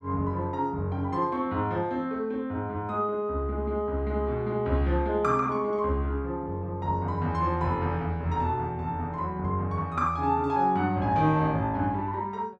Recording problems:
none

